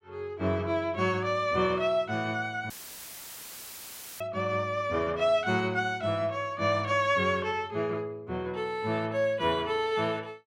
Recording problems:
audio cutting out; at 2.5 s for 1.5 s; filled with static

